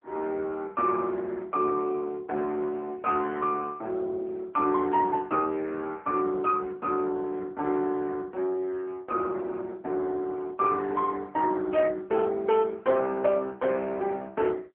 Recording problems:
phone line; 240 Hz to 3.1 kHz, AMR-NB

